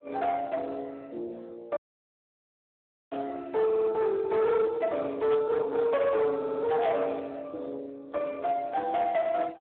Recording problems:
telephone audio; 300 Hz to 2.8 kHz, Speex
distortion; hard clipping, signal-to-distortion ratio 11 dB
dropout; at 2 s for 1.5 s
burst of static; at 3 s, at 5.5 s and at 7 s; peak -7 dB vs average level
stutter; at 3.5 s and at 6.5 s

